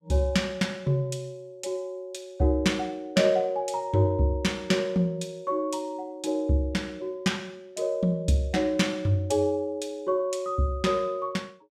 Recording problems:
none

